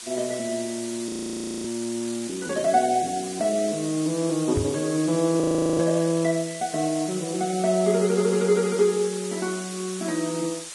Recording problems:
lossy compression; Vorbis, log-spectral distance 11 dB, nothing above 16.1 kHz
background hiss; slope +3 dB per octave, SNR 11 dB
frozen audio; at 1 s for 0.5 s and at 5.5 s
microphone thump; at 4.5 s; peak +1 dB vs average level

